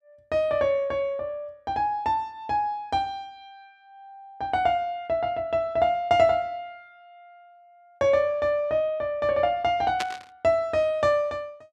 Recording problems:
static burst; at 10 s; peak -1 dB vs average level

